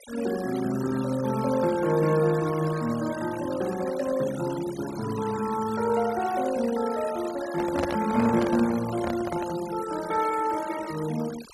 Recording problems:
noise reduction artefacts; signal-to-artefact ratio 15 dB
microphone handling noise; from 7.5 to 9.5 s; peak +1 dB vs average level

